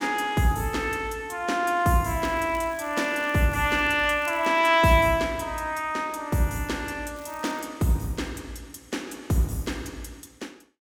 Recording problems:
crackling; from 2 to 5 s and at 7 s; loose cable, SNR 25 dB

